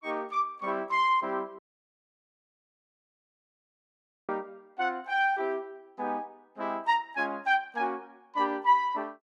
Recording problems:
dropout; at 1.5 s for 2.5 s

